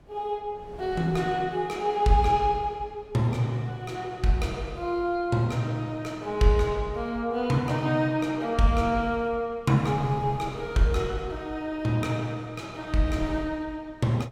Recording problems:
wind on the microphone; below 430 Hz, SNR 21 dB

